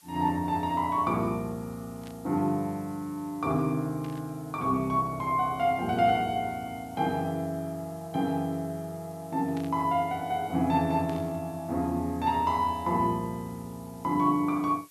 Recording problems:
hiss; slope +2 dB per octave, SNR 25 dB
burst of static; 4 times, first at 2 s; peak -14 dB vs average level

